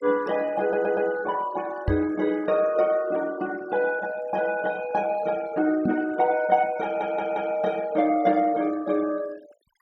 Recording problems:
denoising artefacts; signal-to-artefact ratio 22 dB
audio stuttering; at 0.5 s and at 7 s
microphone thump; at 2 s and at 6 s; peak +3 dB vs average level

